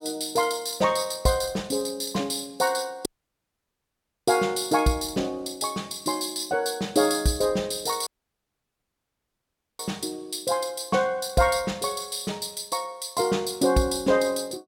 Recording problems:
audio cutting out; at 3 s for 1 s and at 8 s for 1.5 s

